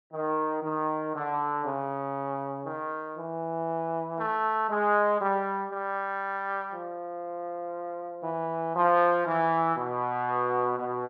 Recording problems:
none

